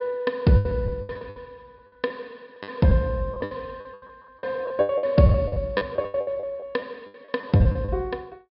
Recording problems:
treble cut off; nothing above 5.5 kHz
lost packets; 19% of the sound replaced, filled with the last packet

